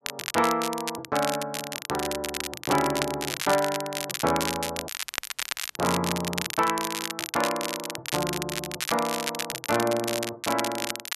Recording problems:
crackle; vinyl, SNR 3 dB
dropout; at 5 s for 1 s

